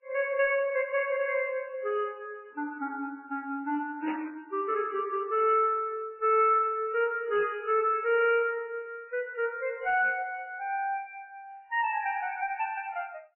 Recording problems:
codec artefacts; MP3, then MP3, log-spectral distance 2 dB, nothing above 2.4 kHz
distortion; soft clipping, signal-to-distortion ratio 11 dB
static burst; at 4 s; peak -6 dB vs average level

